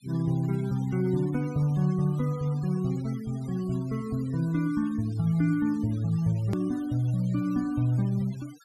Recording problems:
noise reduction artefacts; signal-to-artefact ratio 23 dB
hard cut with a click; at 6.5 s

